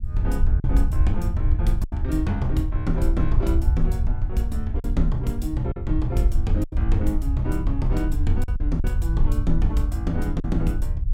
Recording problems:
rumble; below 68 Hz, SNR -3 dB
packet loss; 4% of the sound replaced, filled with silence

